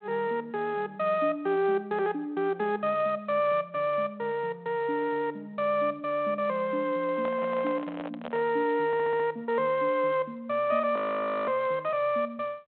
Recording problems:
phone line; 240 Hz to 3.5 kHz, G.726
microphone handling noise; from 7 to 8.5 s; peak -6 dB vs average level
audio stuttering; at 9 s
frozen audio; at 11 s for 0.5 s

